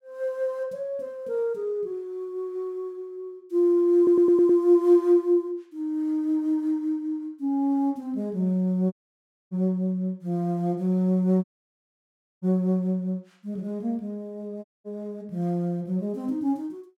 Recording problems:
stutter; at 4 s
dropout; at 9 s for 0.5 s, at 11 s for 1 s and at 15 s

